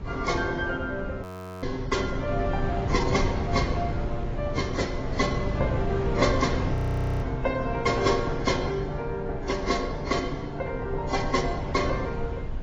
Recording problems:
codec artefacts; AAC, then AAC, log-spectral distance 3 dB
electrical hum; 60 Hz, harmonics up to 720 Hz, SNR 24 dB
low-frequency rumble; below 86 Hz, SNR 11 dB
wind noise; below 260 Hz, SNR 5 dB
frozen audio; at 1 s and at 7 s

